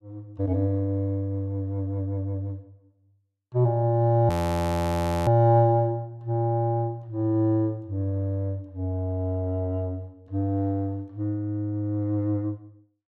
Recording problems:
audio freezing; at 4.5 s for 1 s

